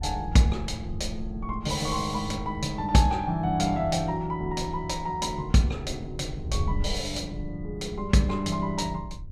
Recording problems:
wind on the microphone; below 80 Hz, SNR 11 dB

